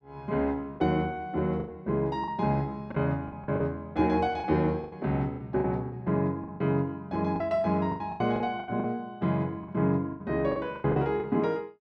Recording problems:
lost packets; 11% of the sound replaced, filled with the last packet

